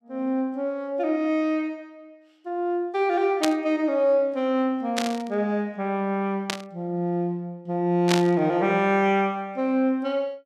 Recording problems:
burst of static; 4 times, first at 3.5 s; peak +3 dB vs average level

